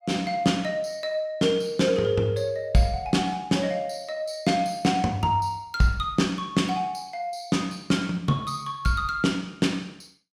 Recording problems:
none

